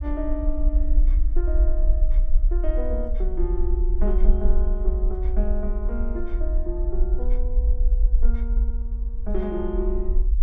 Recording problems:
rumble; below 48 Hz, SNR -7 dB

